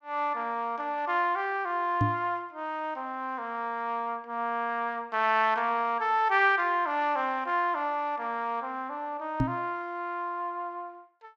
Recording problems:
microphone thump; at 2 s and at 9.5 s; peak +5 dB vs average level

